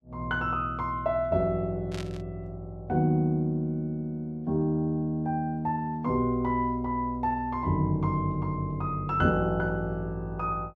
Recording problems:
static burst; at 2 s; peak -8 dB vs average level

